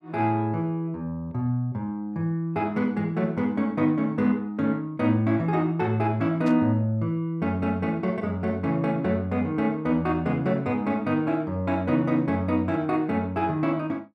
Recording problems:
static burst; at 6.5 s; peak -14 dB vs average level

